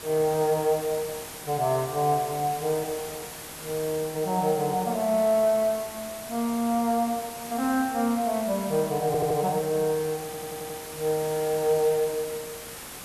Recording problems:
hiss; slope -2 dB per octave, SNR 12 dB
audio stuttering; at 9 s and at 10 s

